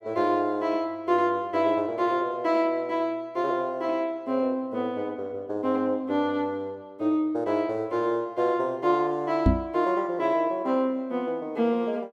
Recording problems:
microphone thump; at 9.5 s; peak +8 dB vs average level

